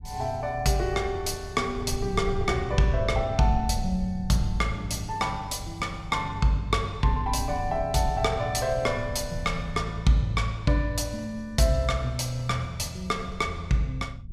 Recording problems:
rumble; below 100 Hz, SNR 11 dB

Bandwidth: 15 kHz